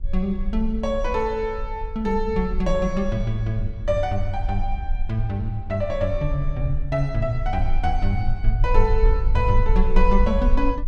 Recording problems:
rumble; below 44 Hz, strongest tone 24 Hz, SNR 3 dB

